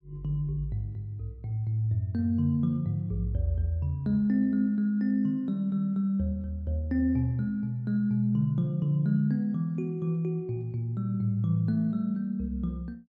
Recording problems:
none

